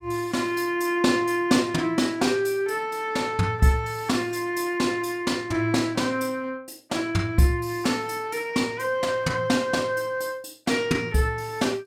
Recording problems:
none

